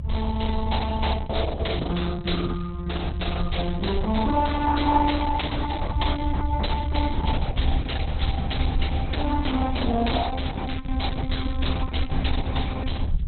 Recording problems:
lossy compression; Opus, log-spectral distance 10 dB, nothing above 4.1 kHz
low-frequency rumble; below 74 Hz, SNR 0 dB

